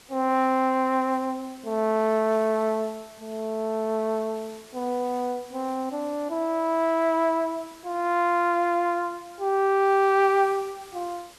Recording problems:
background hiss; slope -1 dB per octave, SNR 24 dB

